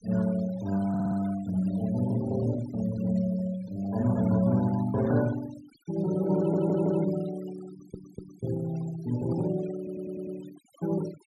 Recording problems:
denoising artefacts; signal-to-artefact ratio 18 dB
audio stuttering; 4 times, first at 1 s

